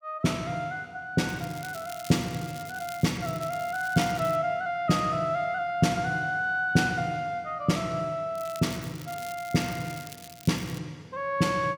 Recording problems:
crackle; from 1.5 to 4.5 s and from 8.5 to 11 s; loose cable, SNR 16 dB

